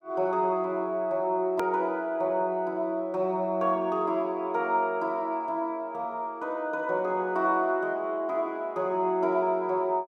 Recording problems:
hard cut with a click; at 1.5 s

